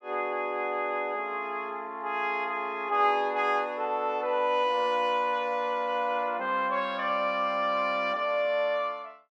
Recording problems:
none

